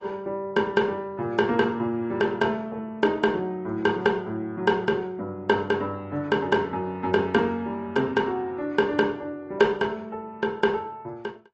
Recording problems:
lossy compression; AAC, log-spectral distance 2 dB, nothing above 7.8 kHz

